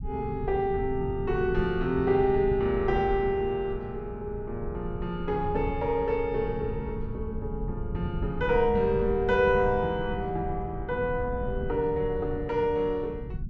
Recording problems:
low-frequency rumble; below 140 Hz, SNR 9 dB

